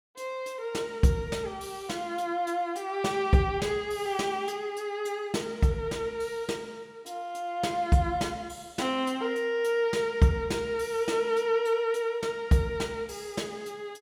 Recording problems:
none

